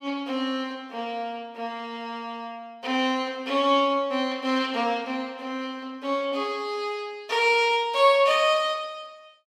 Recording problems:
none

